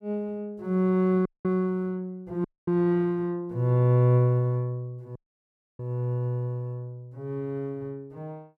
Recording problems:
audio cutting out; at 1.5 s, at 2.5 s and at 5 s for 0.5 s

